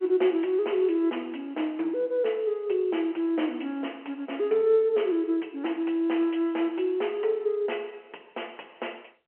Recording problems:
telephone audio; 300 Hz to 3.3 kHz, G.711

